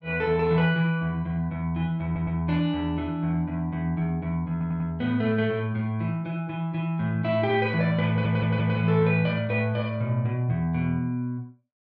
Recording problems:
stutter; at 2 s, at 4.5 s and at 8 s

